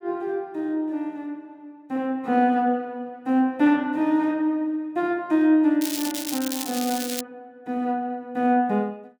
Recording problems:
crackle; from 6 to 7 s; loose cable, SNR 7 dB

